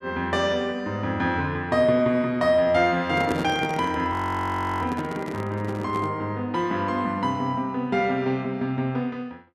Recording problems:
handling noise; from 3 to 6 s; peak +2 dB vs average level
audio freezing; at 4 s for 0.5 s

